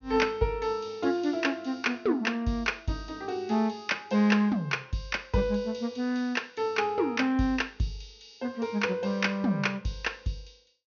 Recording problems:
low-pass filter; nothing above 6.3 kHz

